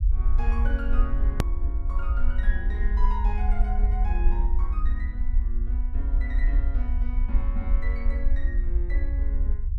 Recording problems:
rumble; below 52 Hz, SNR -11 dB
click at an edit; at 1.5 s

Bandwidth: 13 kHz